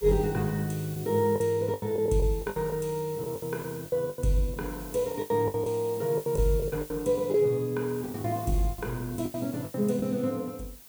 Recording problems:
background hiss; slope 0 dB per octave, SNR 16 dB
packet loss; 13% of the sound replaced, filled with the last packet

